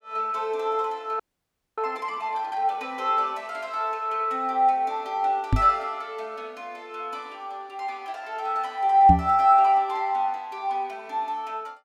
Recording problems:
frozen audio; at 1 s for 0.5 s
microphone bump; at 5.5 s and at 9 s; peak +7 dB vs average level

